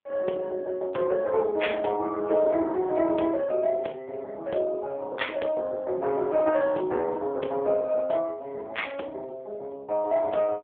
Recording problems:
telephone audio; 280 Hz to 3.5 kHz, AMR-NB

